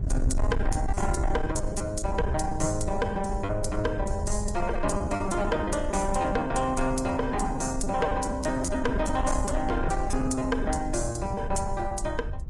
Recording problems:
codec artefacts; Vorbis, log-spectral distance 2 dB, nothing above 10.4 kHz
distortion; soft clipping, signal-to-distortion ratio 10 dB
rumble; below 84 Hz, SNR 5 dB
lost packets; 14% of the sound replaced, filled with repeated pitch periods

